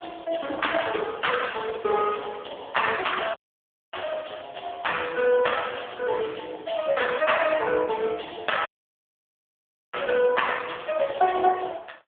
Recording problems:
telephone audio; 320 Hz to 3.5 kHz, AMR-NB
audio cutting out; at 3.5 s for 0.5 s and at 8.5 s for 1.5 s

